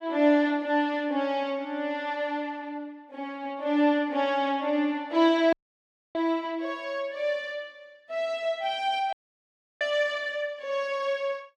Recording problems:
dropout; at 5.5 s for 0.5 s and at 9 s for 0.5 s

